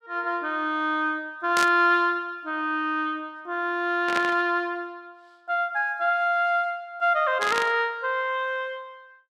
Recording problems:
burst of static; at 1.5 s, at 4 s and at 7.5 s; peak 0 dB vs average level

